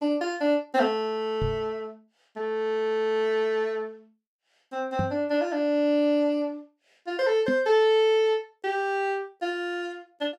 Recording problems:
microphone thump; at 1.5 s, at 5 s and at 7.5 s; peak +1 dB vs average level

